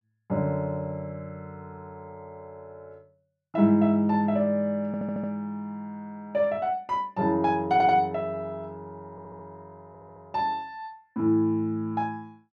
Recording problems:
audio stuttering; 4 times, first at 5 s

